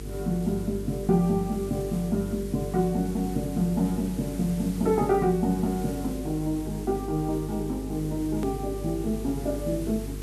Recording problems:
electrical hum; 50 Hz, harmonics up to 450 Hz, SNR 10 dB
background hiss; SNR 17 dB
hard cut with a click; at 8.5 s

